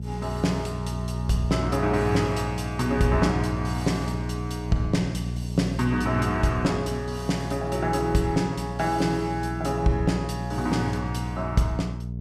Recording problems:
hum; 60 Hz, harmonics up to 480 Hz, SNR 5 dB

